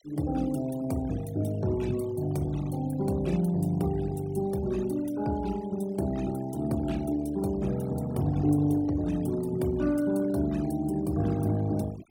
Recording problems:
denoising artefacts; signal-to-artefact ratio 20 dB

